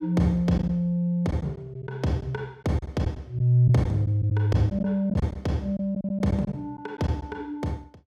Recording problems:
lost packets; 6% of the sound replaced, filled with silence

